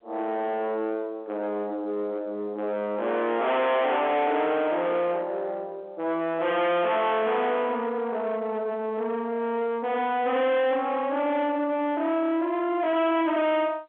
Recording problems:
telephone audio; 260 Hz to 3.6 kHz, G.711
distortion; soft clipping, signal-to-distortion ratio 7 dB

